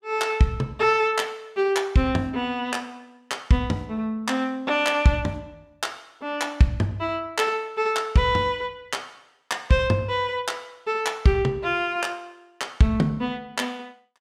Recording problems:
none

